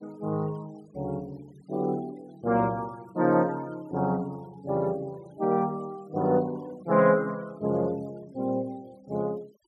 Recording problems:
noise reduction artefacts; signal-to-artefact ratio 27 dB

